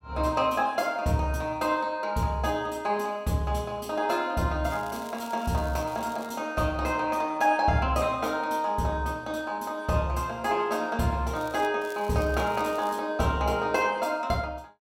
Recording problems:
crackling; from 4.5 to 6.5 s, at 11 s and from 12 to 13 s; loose cable, SNR 22 dB

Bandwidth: 16 kHz